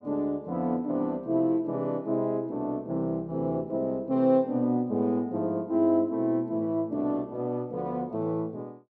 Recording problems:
none

